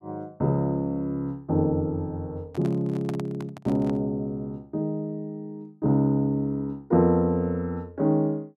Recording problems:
handling noise; from 2.5 to 4 s; peak -7 dB vs average level

